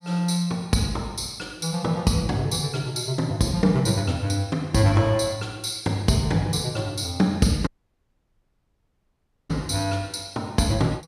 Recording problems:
audio cutting out; at 7.5 s for 2 s

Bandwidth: 14.5 kHz